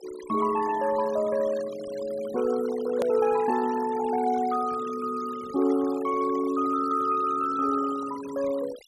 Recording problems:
noise reduction artefacts; signal-to-artefact ratio 17 dB
edit click; at 3 s

